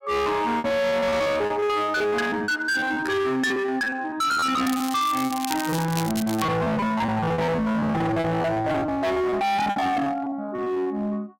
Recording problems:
distortion; hard clipping, uneven, signal-to-distortion ratio 6 dB
lost packets; 18% of the sound replaced, filled with repeated pitch periods
crackle; from 4.5 to 6.5 s; loose cable, SNR 10 dB

